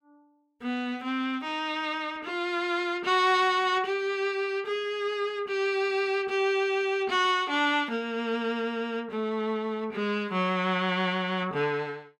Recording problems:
none

